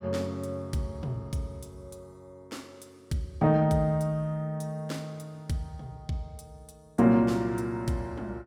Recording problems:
none

